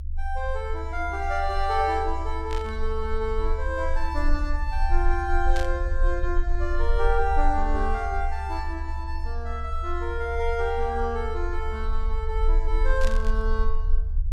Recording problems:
rumble; below 46 Hz, strongest tone 20 Hz, SNR 1 dB
static burst; at 2.5 s, at 5.5 s and at 13 s; peak -4 dB vs average level

